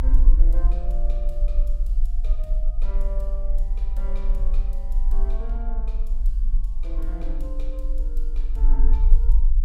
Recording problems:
rumble; below 40 Hz, strongest tone 22 Hz, SNR -16 dB

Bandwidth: 16 kHz